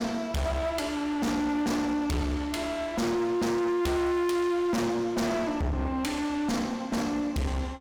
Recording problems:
distorted audio; hard clipping, uneven, signal-to-distortion ratio 4 dB

